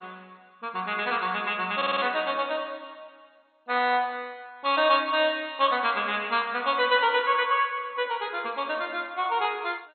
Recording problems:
lossy compression; MP2, log-spectral distance 5 dB, nothing above 3.8 kHz
stutter; at 2 s

